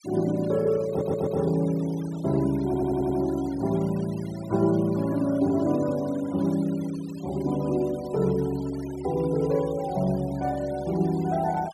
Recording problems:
noise reduction artefacts; signal-to-artefact ratio 21 dB
audio stuttering; at 1 s and at 2.5 s

